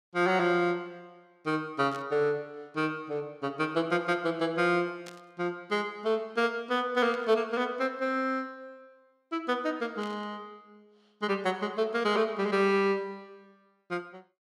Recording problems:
burst of static; 4 times, first at 2 s; peak -12 dB vs average level

